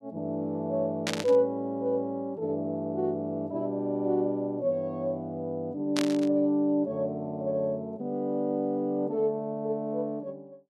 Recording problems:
static burst; at 1 s and at 6 s; peak +2 dB vs average level

